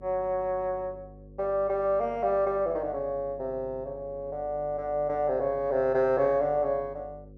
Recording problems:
electrical hum; 50 Hz, harmonics up to 550 Hz, SNR 21 dB

